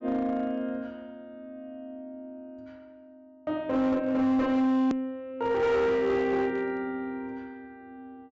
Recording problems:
low-pass filter; nothing above 8 kHz
distortion; hard clipping, uneven, signal-to-distortion ratio 11 dB
edit click; at 5 s

